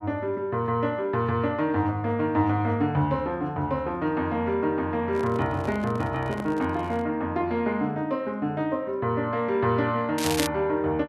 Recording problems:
microphone handling noise; from 5 to 7 s; peak -5 dB vs average level
crackle; at 10 s; loose cable, SNR 5 dB

